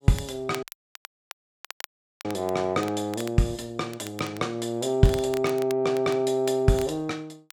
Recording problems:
crackle; vinyl, SNR 18 dB
dropout; at 0.5 s for 1.5 s

